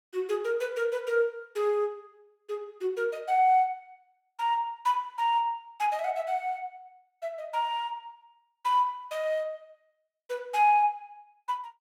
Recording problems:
none

